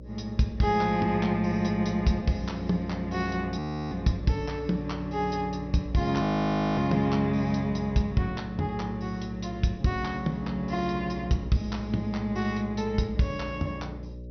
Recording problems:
treble cut off; nothing above 6 kHz
electrical hum; 60 Hz, harmonics up to 600 Hz, SNR 13 dB
audio freezing; at 3.5 s and at 6 s for 0.5 s

